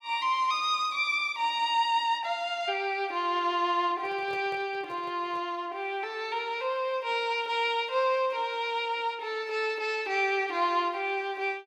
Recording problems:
handling noise; from 4 to 5.5 s; peak -12 dB vs average level

